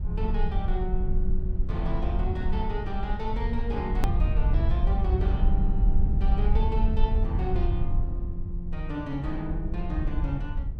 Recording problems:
low-frequency rumble; below 64 Hz, SNR -5 dB
hard cut with a click; at 4 s

